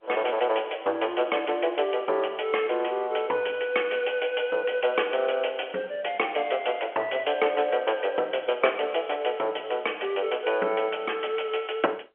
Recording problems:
phone line; 300 Hz to 3.3 kHz, G.711

